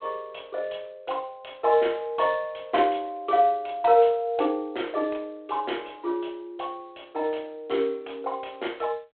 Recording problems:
phone line; 280 Hz to 3.4 kHz, G.726

